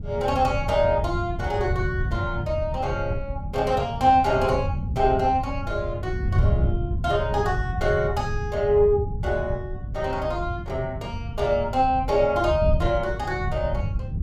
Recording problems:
wind on the microphone; below 120 Hz, SNR 5 dB

